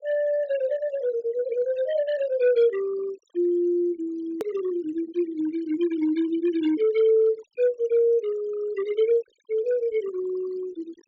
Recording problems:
treble cut off; nothing above 8 kHz
denoising artefacts; signal-to-artefact ratio 19 dB
edit click; at 4.5 s

